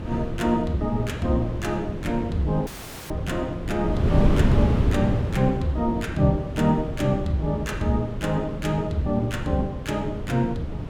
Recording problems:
wind noise; below 230 Hz, SNR 4 dB
dropout; at 2.5 s

